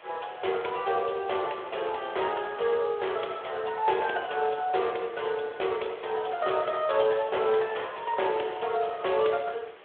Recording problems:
phone line; 300 Hz to 3.5 kHz, Speex
hiss; SNR 20 dB

